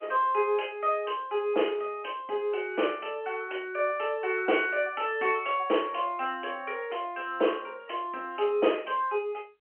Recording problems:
phone line; 260 Hz to 3.1 kHz, G.711

